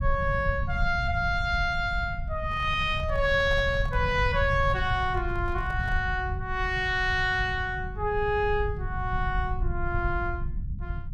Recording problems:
low-frequency rumble; below 100 Hz, SNR 6 dB
handling noise; from 2.5 to 6 s; peak -12 dB vs average level

